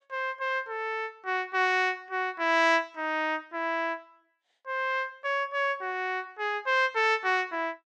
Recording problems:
none

